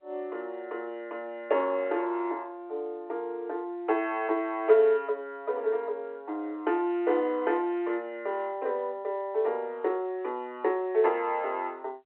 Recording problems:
phone line; 300 Hz to 3.5 kHz, G.711

